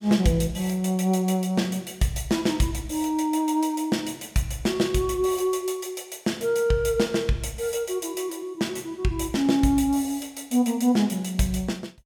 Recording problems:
none

